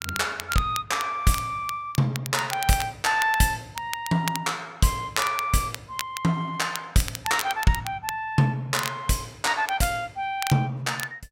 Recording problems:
crackling; vinyl, SNR 10 dB

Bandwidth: 16 kHz